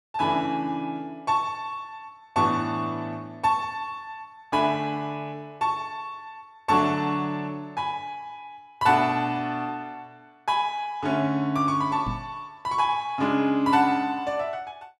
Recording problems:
knock on the microphone; at 12 s; peak -2 dB vs average level

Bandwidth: 13.5 kHz